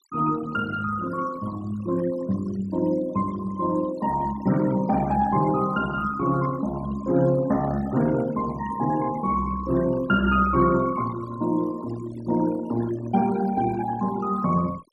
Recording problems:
denoising artefacts; signal-to-artefact ratio 17 dB

